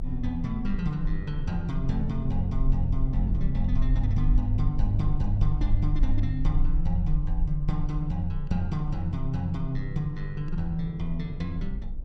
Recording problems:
mains hum; 60 Hz, harmonics up to 780 Hz, SNR 26 dB
rumble; below 42 Hz, strongest tone 22 Hz, SNR 3 dB
wind on the microphone; below 210 Hz, SNR 14 dB

